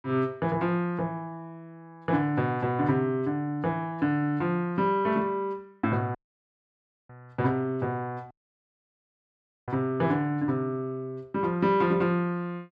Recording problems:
dropout; at 6 s for 1 s and at 8.5 s for 1.5 s

